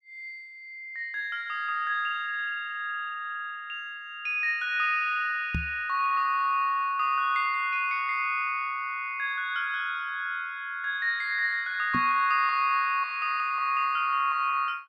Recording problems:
microphone bump; at 5.5 s and at 12 s; peak 0 dB vs average level

